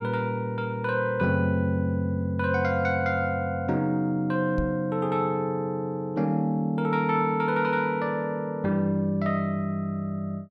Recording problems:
microphone bump; at 4.5 s; peak -2 dB vs average level

